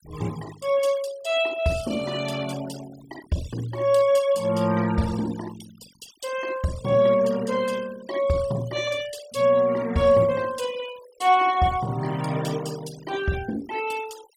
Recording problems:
noise reduction artefacts; signal-to-artefact ratio 18 dB

